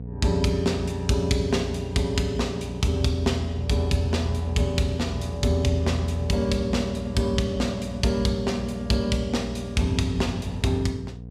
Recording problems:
mains hum; 60 Hz, harmonics up to 540 Hz, SNR 11 dB

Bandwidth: 15.5 kHz